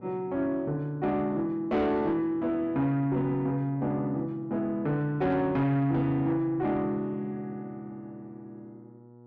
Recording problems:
distortion; soft clipping, signal-to-distortion ratio 12 dB
hum; 60 Hz, harmonics up to 1.3 kHz, SNR 23 dB

